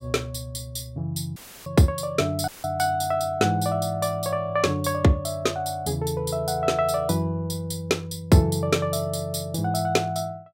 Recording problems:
dropout; at 1.5 s and at 2.5 s; filled with static

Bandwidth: 16 kHz